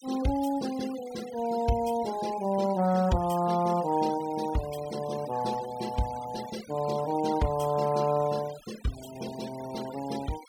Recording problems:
denoising artefacts; signal-to-artefact ratio 17 dB

